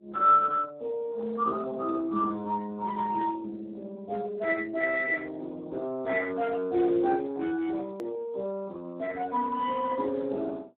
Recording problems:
telephone audio; 240 Hz to 3 kHz, Speex
click at an edit; at 8 s

